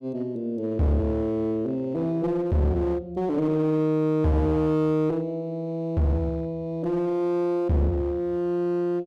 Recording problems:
distorted audio; hard clipping, uneven, signal-to-distortion ratio 7 dB

